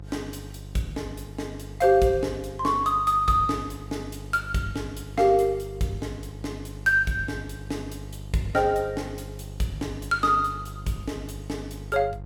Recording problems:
hum; 50 Hz, harmonics up to 700 Hz, SNR 14 dB

